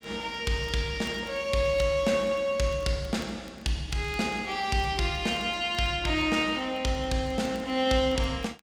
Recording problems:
crackle; vinyl, SNR 30 dB

